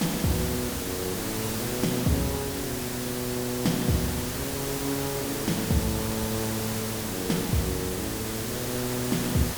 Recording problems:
background hiss; slope -3 dB per octave, SNR 1 dB

